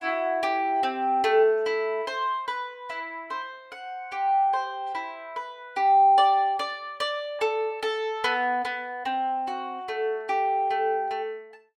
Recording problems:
none

